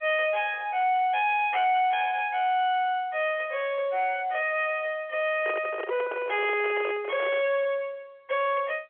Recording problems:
telephone audio; 320 Hz to 3.3 kHz, G.711
distortion; soft clipping, signal-to-distortion ratio 7 dB
handling noise; from 5.5 to 7.5 s; peak -3 dB vs average level

